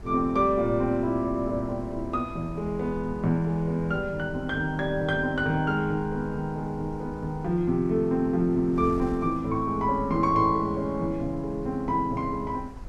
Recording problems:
wind noise; below 110 Hz, SNR 16 dB

